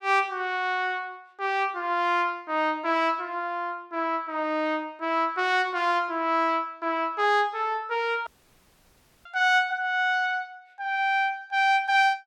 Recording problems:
dropout; at 8.5 s for 1 s

